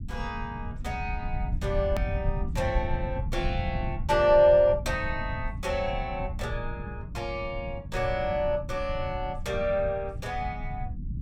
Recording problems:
low-frequency rumble; below 110 Hz, SNR 7 dB
click at an edit; at 2 s

